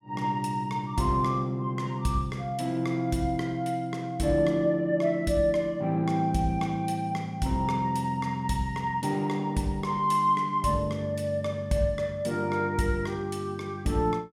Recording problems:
none

